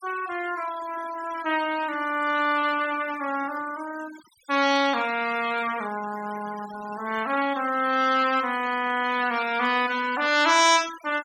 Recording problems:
denoising artefacts; signal-to-artefact ratio 16 dB

